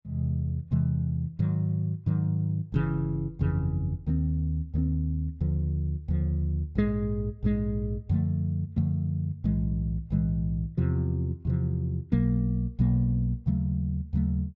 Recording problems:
none

